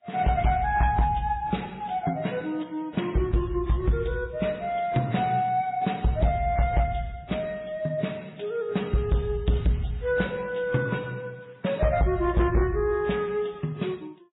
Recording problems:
lossy compression; MP3, then AAC, log-spectral distance 3 dB, nothing above 3.8 kHz
distorted audio; hard clipping, signal-to-distortion ratio 11 dB

